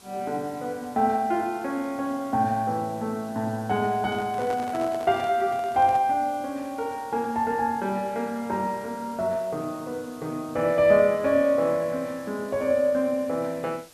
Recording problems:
background hiss; SNR 24 dB
microphone handling noise; from 4 to 6 s; peak -8 dB vs average level

